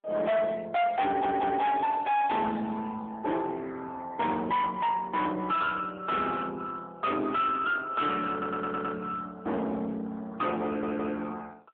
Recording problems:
telephone audio; 320 Hz to 3.6 kHz, AMR-NB
distortion; hard clipping, uneven, signal-to-distortion ratio 7 dB
stutter; at 1 s, at 8.5 s and at 11 s

